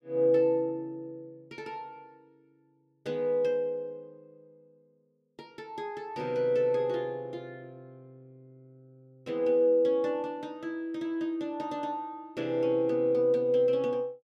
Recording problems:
none

